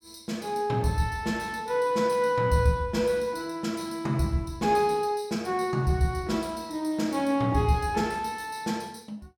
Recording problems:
none

